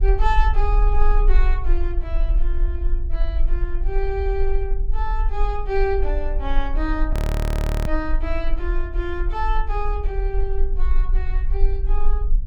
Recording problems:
low-frequency rumble; below 40 Hz, strongest tone 18 Hz, SNR -4 dB
audio freezing; at 7 s for 0.5 s

